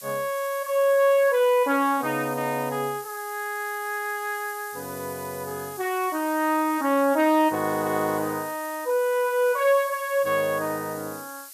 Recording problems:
hiss; slope +5 dB per octave, SNR 16 dB

